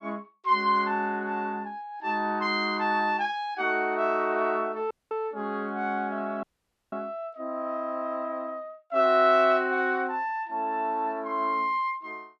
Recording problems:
audio cutting out; at 5 s and at 6.5 s

